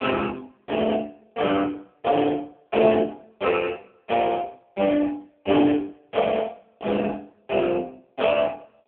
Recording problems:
telephone audio; 190 Hz to 3.3 kHz, AMR-NB

